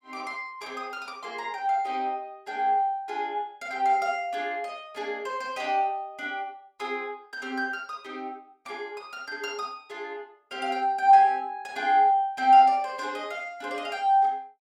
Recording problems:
none

